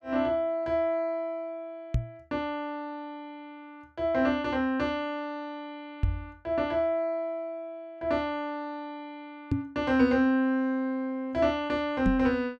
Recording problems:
microphone bump; 4 times, first at 2 s; peak +6 dB vs average level

